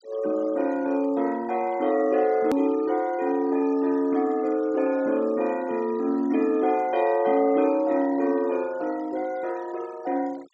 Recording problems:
low-pass filter; nothing above 8 kHz
noise reduction artefacts; signal-to-artefact ratio 24 dB
hard cut with a click; at 2.5 s

